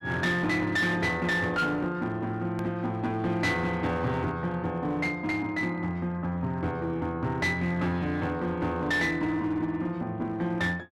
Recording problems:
distorted audio; hard clipping, uneven, signal-to-distortion ratio 11 dB
edit click; at 2.5 s

